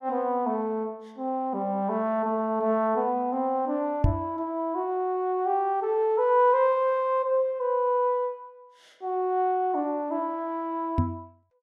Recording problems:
microphone thump; at 4 s and at 11 s; peak +7 dB vs average level

